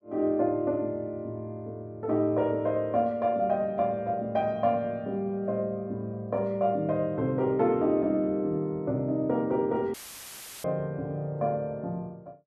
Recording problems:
audio cutting out; at 10 s for 0.5 s; filled with static

